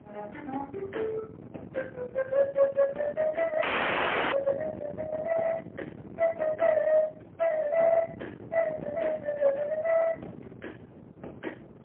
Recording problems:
phone line; 300 Hz to 3.3 kHz, AMR-NB, then MP3
distorted audio; soft clipping, signal-to-distortion ratio 18 dB
wind on the microphone; below 670 Hz, SNR 13 dB
dropout; at 3.5 s for 0.5 s

